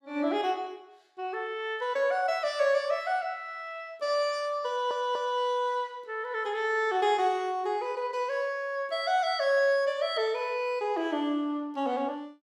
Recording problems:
audio stuttering; at 4.5 s

